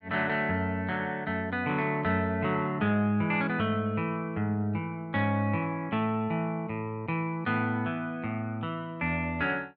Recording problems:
none

